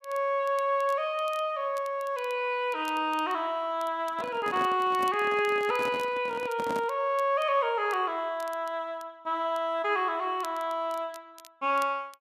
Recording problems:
crackle; vinyl, SNR 25 dB
handling noise; from 4 to 7 s; peak -3 dB vs average level

